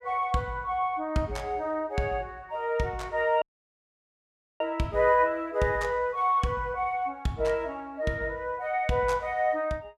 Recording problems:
audio cutting out; at 3.5 s for 1 s

